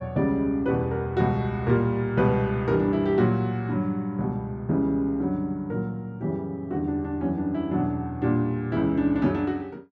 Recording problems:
none

